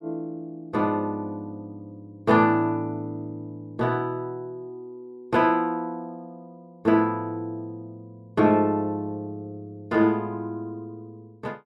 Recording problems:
none

